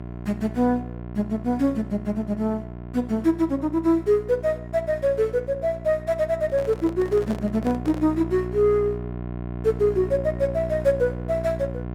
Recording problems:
hum; 60 Hz, harmonics up to 1.1 kHz, SNR 10 dB
handling noise; from 6.5 to 8 s; peak -8 dB vs average level

